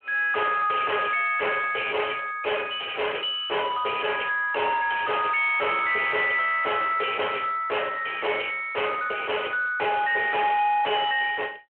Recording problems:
telephone audio; 320 Hz to 3.2 kHz, Speex
distorted audio; soft clipping, signal-to-distortion ratio 5 dB

